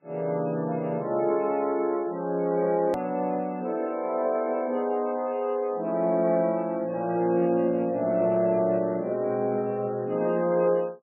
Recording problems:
lossy codec; MP3, log-spectral distance 2 dB, nothing above 13.1 kHz
hard cut with a click; at 3 s

